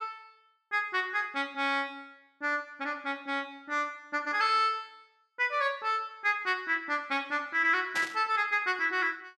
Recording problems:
burst of static; at 8 s; peak -2 dB vs average level

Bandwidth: 14 kHz